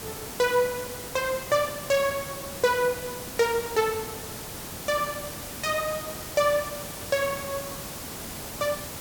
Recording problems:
background hiss; slope -3 dB per octave, SNR 8 dB

